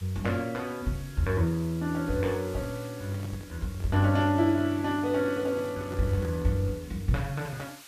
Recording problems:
hiss; slope +1 dB per octave, SNR 20 dB
handling noise; from 3 to 6.5 s; peak -9 dB vs average level

